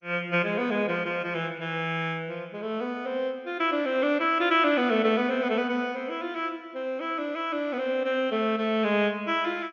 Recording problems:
lossy codec; MP2, log-spectral distance 2 dB, nothing above 6.5 kHz

